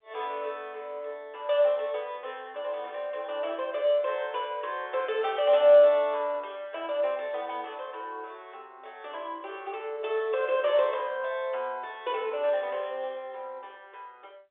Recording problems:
telephone audio; 300 Hz to 3.7 kHz, G.711

